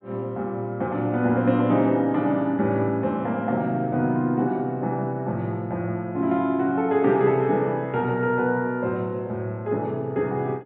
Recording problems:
low-pass filter; nothing above 4 kHz

